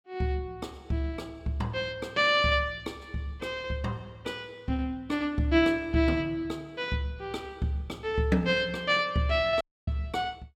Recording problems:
audio cutting out; at 9.5 s

